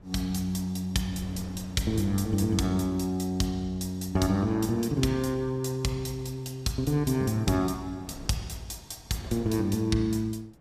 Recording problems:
wind noise; below 370 Hz, SNR 21 dB

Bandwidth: 15.5 kHz